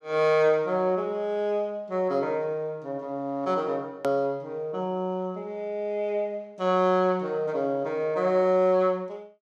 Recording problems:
hard cut with a click; at 4 s

